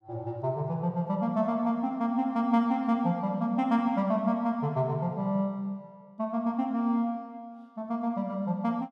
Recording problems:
none

